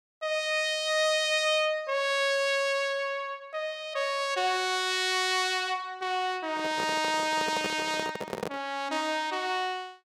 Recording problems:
handling noise; from 6.5 to 8.5 s; peak -1 dB vs average level

